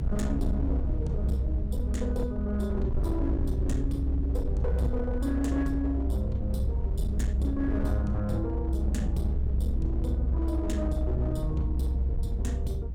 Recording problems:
distortion; hard clipping, signal-to-distortion ratio 12 dB
rumble; below 68 Hz, strongest tone 64 Hz, SNR -3 dB

